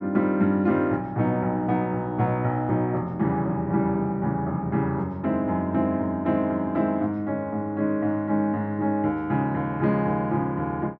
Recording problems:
none

